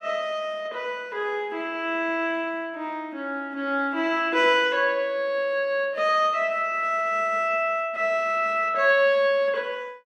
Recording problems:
none

